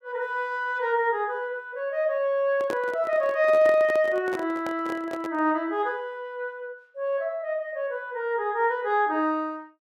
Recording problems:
microphone handling noise; from 2.5 to 5.5 s; peak -3 dB vs average level

